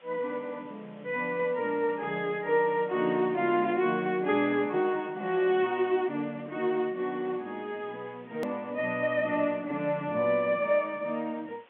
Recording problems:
telephone audio; 190 Hz to 3.5 kHz, G.711
hiss; SNR 29 dB
click at an edit; at 8.5 s

